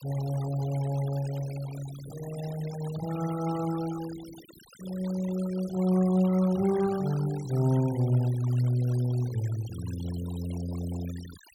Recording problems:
denoising artefacts; signal-to-artefact ratio 17 dB

